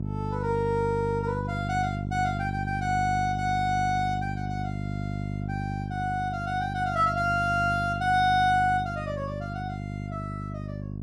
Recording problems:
mains hum; 50 Hz, harmonics up to 450 Hz, SNR 6 dB

